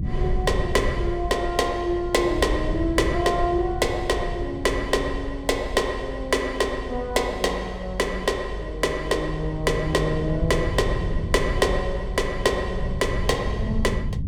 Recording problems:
rumble; below 100 Hz, SNR 6 dB

